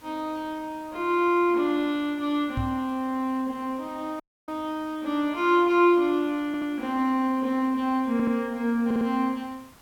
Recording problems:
background hiss; slope -3 dB per octave, SNR 27 dB
microphone thump; at 2.5 s; peak -1 dB vs average level
audio cutting out; at 4 s
audio stuttering; at 6.5 s, at 8 s and at 9 s

